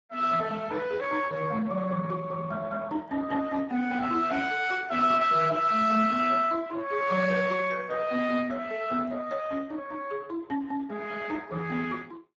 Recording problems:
codec artefacts; Speex, log-spectral distance 4 dB

